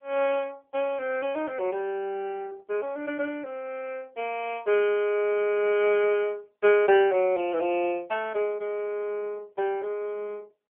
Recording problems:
telephone audio; 300 Hz to 3.3 kHz, AMR-NB

